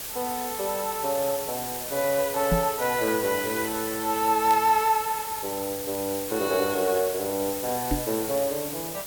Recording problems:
background hiss; slope -1 dB per octave, SNR 6 dB
crackling; vinyl, SNR 27 dB
microphone thump; at 2.5 s and at 8 s; peak +4 dB vs average level

